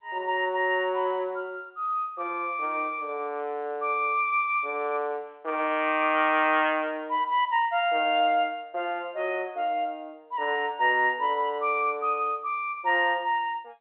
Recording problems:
telephone audio; 320 Hz to 3.4 kHz, G.711

